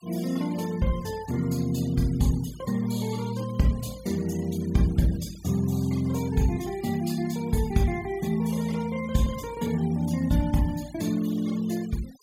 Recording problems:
denoising artefacts; signal-to-artefact ratio 19 dB

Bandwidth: 16 kHz